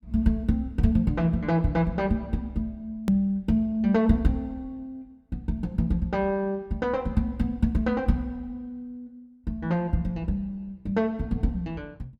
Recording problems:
edit click; at 3 s

